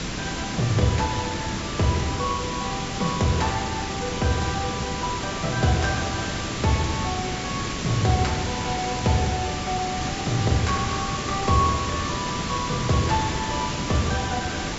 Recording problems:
treble missing; nothing above 7.5 kHz
hiss; SNR 3 dB

